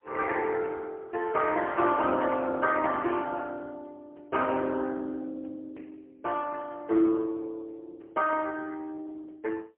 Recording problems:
telephone audio; 280 Hz to 3.1 kHz, AMR-NB, then MP3

